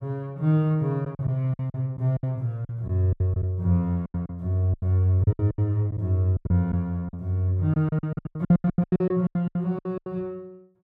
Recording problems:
packet loss; 17% of the sound replaced, filled with silence

